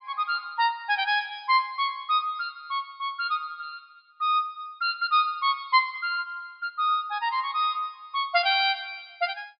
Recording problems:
treble missing; nothing above 5.5 kHz

